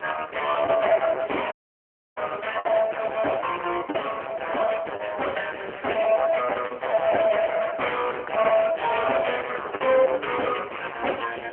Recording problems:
telephone audio; 320 Hz to 3.1 kHz, AMR-NB
distortion; hard clipping, signal-to-distortion ratio 7 dB
wind on the microphone; below 1.3 kHz, SNR 18 dB
packet loss; 6% of the sound replaced, filled with the last packet
audio cutting out; at 1.5 s for 0.5 s

